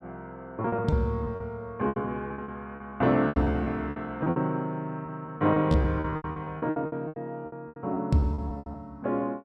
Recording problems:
packet loss; 17% of the sound replaced, filled with repeated pitch periods

